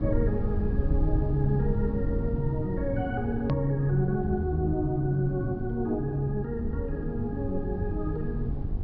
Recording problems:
low-pass filter; nothing above 5.5 kHz
hum; 50 Hz, harmonics up to 1.2 kHz, SNR 12 dB
low-frequency rumble; below 84 Hz, SNR 5 dB
click at an edit; at 3.5 s

